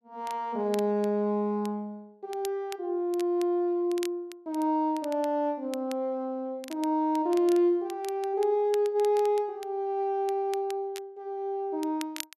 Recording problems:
crackling; vinyl, SNR 19 dB

